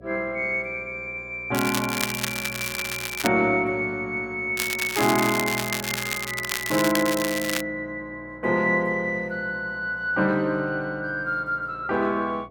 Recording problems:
electrical hum; 60 Hz, harmonics up to 720 Hz, SNR 23 dB
crackling; from 1.5 to 3.5 s and from 4.5 to 7.5 s; loose cable, SNR 4 dB

